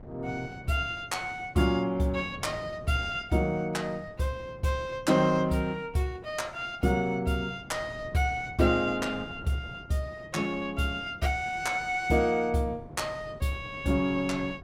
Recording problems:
wind noise; below 330 Hz, SNR 18 dB

